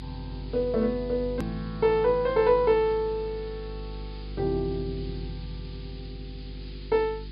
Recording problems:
treble missing; nothing above 5 kHz
hum; 50 Hz, harmonics up to 400 Hz, SNR 13 dB
background hiss; SNR 24 dB
edit click; at 1.5 s

